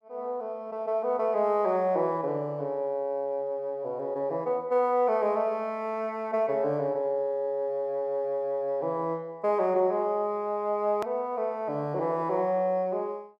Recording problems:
edit click; at 11 s

